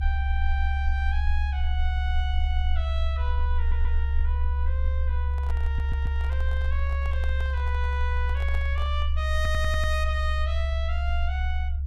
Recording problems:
rumble; below 70 Hz, strongest tone 70 Hz, SNR -8 dB
audio stuttering; at 3.5 s, at 5.5 s and at 9.5 s
handling noise; from 5 to 9 s; peak -5 dB vs average level

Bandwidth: 15.5 kHz